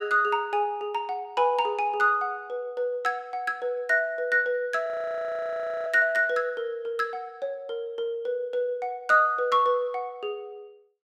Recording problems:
frozen audio; at 5 s for 1 s

